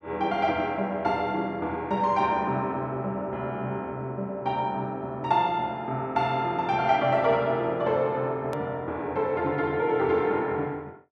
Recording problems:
click at an edit; at 8.5 s

